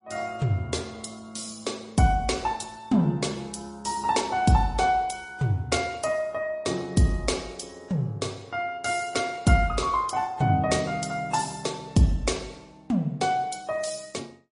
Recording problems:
lossy codec; AAC, then MP3, log-spectral distance 4 dB, nothing above 10.4 kHz

